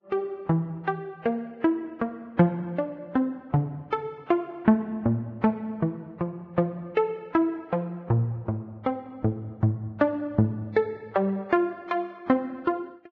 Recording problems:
lossy codec; Vorbis, log-spectral distance 2 dB

